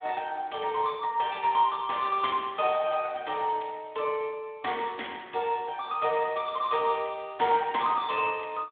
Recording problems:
phone line; 300 Hz to 3.7 kHz, Speex

